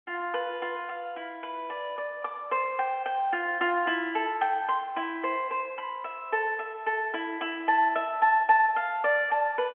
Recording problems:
phone line; 280 Hz to 3.3 kHz, G.711

